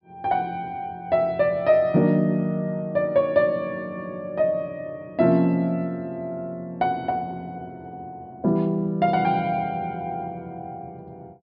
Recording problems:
treble missing; nothing above 5.5 kHz

